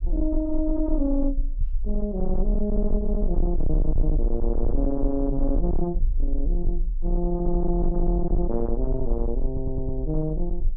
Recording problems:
distortion; soft clipping, signal-to-distortion ratio 11 dB
low-frequency rumble; below 40 Hz, SNR 1 dB
audio stuttering; at 9.5 s

